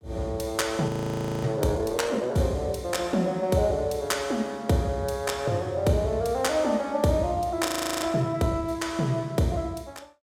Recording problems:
audio freezing; at 1 s for 0.5 s and at 7.5 s

